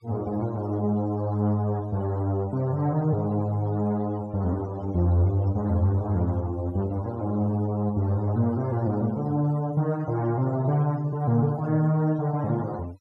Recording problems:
noise reduction artefacts; signal-to-artefact ratio 25 dB

